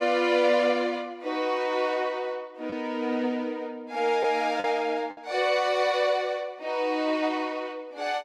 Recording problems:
packet loss; 1.6% of the sound replaced, filled with the last packet

